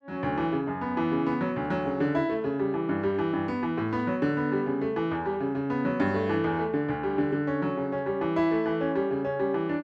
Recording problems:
none

